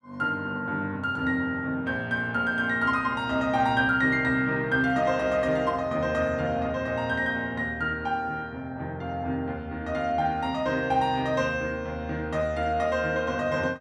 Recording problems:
none

